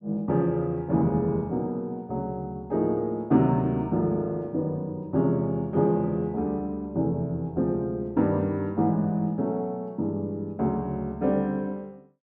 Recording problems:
none

